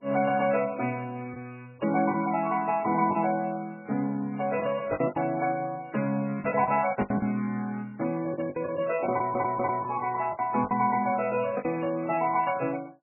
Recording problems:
codec artefacts; MP3, log-spectral distance 3 dB, nothing above 2.5 kHz
packet loss; 8% of the sound replaced, filled with the last packet
stutter; at 9 s

